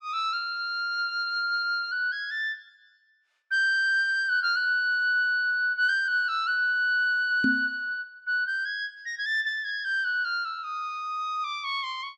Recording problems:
microphone thump; at 7.5 s; peak +3 dB vs average level

